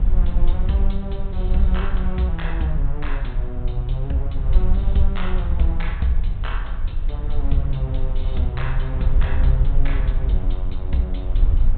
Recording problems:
treble missing; nothing above 4 kHz
low-frequency rumble; below 52 Hz, strongest tone 22 Hz, SNR -3 dB

